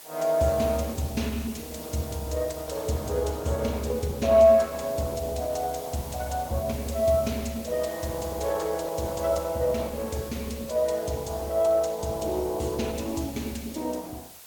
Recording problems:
lossy codec; Opus, log-spectral distance 4 dB, nothing above 18.3 kHz
background hiss; SNR 16 dB

